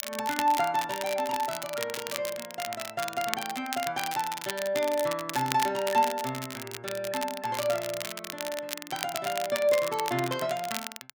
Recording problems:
crackling; vinyl, SNR 7 dB

